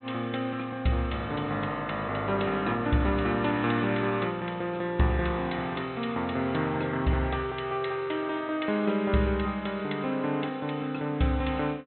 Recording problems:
low-pass filter; nothing above 4 kHz

